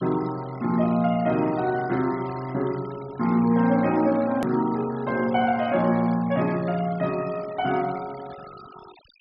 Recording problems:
treble missing; nothing above 5.5 kHz
denoising artefacts; signal-to-artefact ratio 21 dB
hard cut with a click; at 4.5 s

